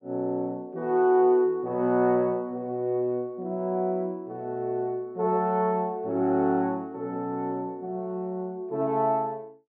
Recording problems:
none

